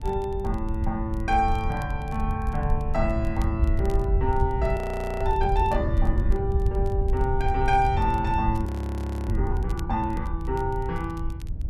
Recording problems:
wind noise; below 82 Hz, SNR 1 dB
crackle; vinyl, SNR 27 dB
frozen audio; at 5 s and at 8.5 s for 0.5 s

